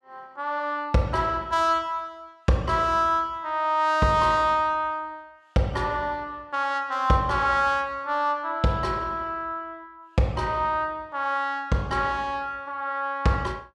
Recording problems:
none

